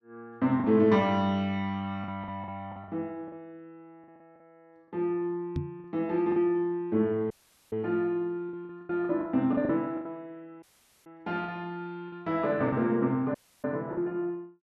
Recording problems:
lost packets; 7% of the sound replaced, filled with the last packet
knock on the microphone; at 5.5 s; peak +1 dB vs average level
dropout; at 7.5 s, at 11 s and at 13 s

